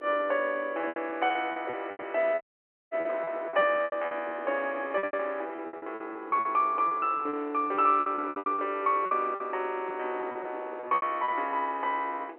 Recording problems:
phone line; 300 Hz to 3.2 kHz, G.711
wind noise; below 630 Hz, SNR 19 dB
lost packets; 17% of the sound replaced, filled with repeated pitch periods
audio cutting out; at 2.5 s for 0.5 s

